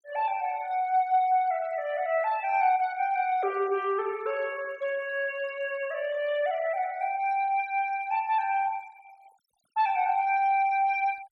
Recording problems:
noise reduction artefacts; signal-to-artefact ratio 23 dB

